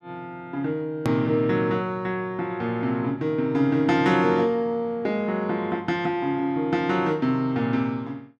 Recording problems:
edit click; at 1 s

